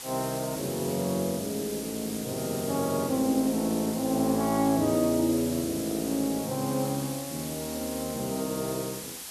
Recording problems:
background hiss; slope +1 dB per octave, SNR 9 dB

